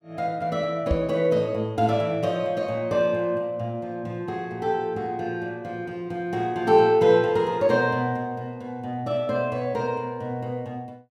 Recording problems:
microphone thump; at 1 s; peak +3 dB vs average level

